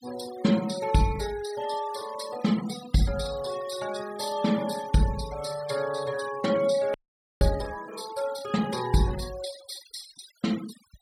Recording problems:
denoising artefacts; signal-to-artefact ratio 15 dB
audio freezing; at 7 s

